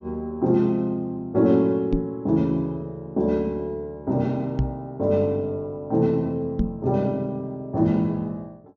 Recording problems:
low-pass filter; nothing above 7.3 kHz
microphone bump; at 2 s, at 4.5 s and at 6.5 s; peak +5 dB vs average level

